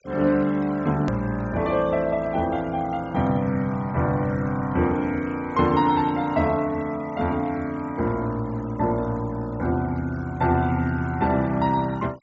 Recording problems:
treble missing; nothing above 8 kHz
noise reduction artefacts; signal-to-artefact ratio 24 dB
hard cut with a click; at 1 s

